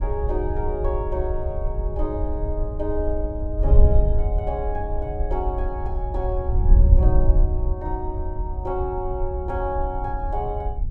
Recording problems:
wind noise; below 64 Hz, SNR -4 dB

